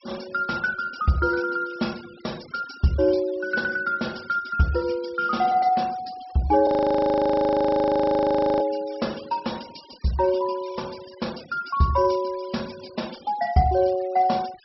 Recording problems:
treble missing; nothing above 5.7 kHz
noise reduction artefacts; signal-to-artefact ratio 21 dB
frozen audio; at 6.5 s for 2 s

